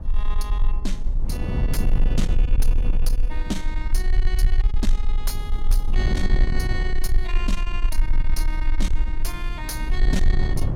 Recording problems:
distorted audio; soft clipping, signal-to-distortion ratio 11 dB
low-frequency rumble; below 36 Hz, strongest tone 20 Hz, SNR -6 dB
wind on the microphone; below 150 Hz, SNR -2 dB

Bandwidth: 16.5 kHz